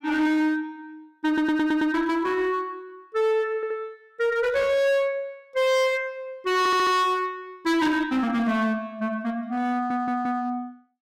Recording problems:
distortion; hard clipping, uneven, signal-to-distortion ratio 7 dB
audio stuttering; 4 times, first at 1.5 s

